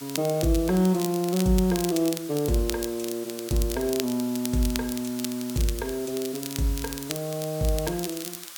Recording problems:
background hiss; SNR 14 dB
crackle; vinyl, SNR 10 dB

